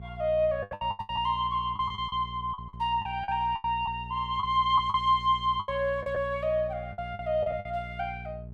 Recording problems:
hum; 60 Hz, harmonics up to 420 Hz, SNR 14 dB
packet loss; 12% of the sound replaced, filled with the last packet

